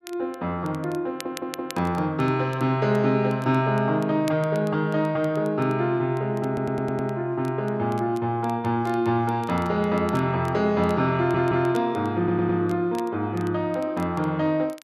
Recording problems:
crackling; vinyl, SNR 23 dB
audio stuttering; 4 times, first at 1 s

